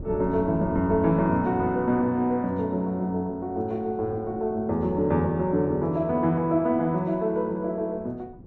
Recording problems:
wind noise; below 230 Hz, SNR 18 dB

